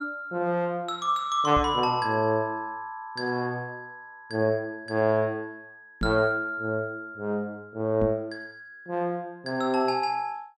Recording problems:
microphone bump; at 1.5 s, at 6 s and at 8 s; peak 0 dB vs average level

